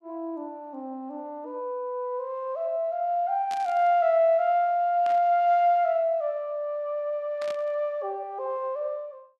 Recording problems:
static burst; at 3.5 s, at 5 s and at 7.5 s; peak -12 dB vs average level

